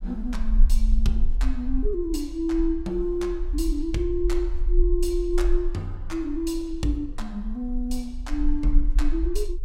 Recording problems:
rumble; below 42 Hz, strongest tone 20 Hz, SNR 1 dB

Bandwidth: 16.5 kHz